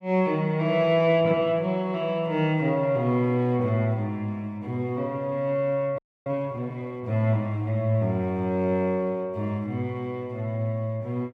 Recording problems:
audio freezing; at 6 s

